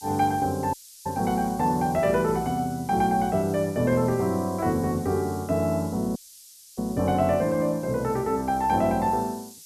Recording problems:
background hiss; SNR 20 dB
audio cutting out; at 0.5 s and at 6 s for 0.5 s

